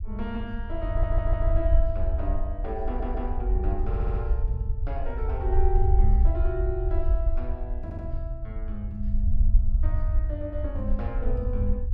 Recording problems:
rumble; below 60 Hz, SNR -6 dB
audio stuttering; 4 times, first at 1 s

